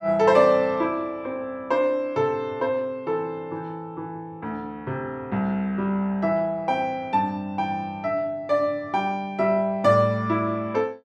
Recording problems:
none

